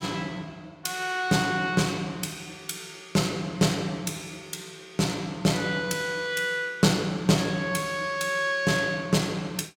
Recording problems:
none

